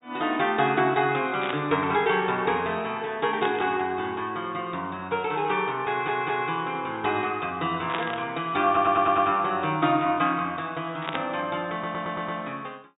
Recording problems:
treble cut off; nothing above 4 kHz
static burst; 4 times, first at 1.5 s; peak -1 dB vs average level
stutter; at 6 s, at 8.5 s and at 12 s

